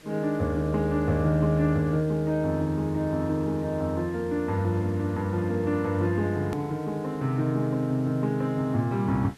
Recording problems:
background hiss; slope -3 dB per octave, SNR 25 dB
edit click; at 6.5 s

